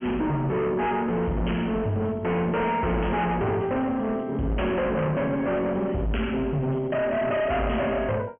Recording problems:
treble cut off; nothing above 3.1 kHz
distortion; hard clipping, signal-to-distortion ratio 6 dB

